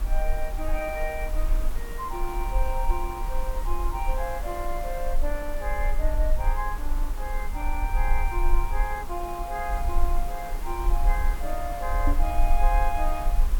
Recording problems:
background hiss; SNR 9 dB
low-frequency rumble; below 38 Hz, strongest tone 20 Hz, SNR -2 dB
microphone thump; at 12 s; peak +6 dB vs average level

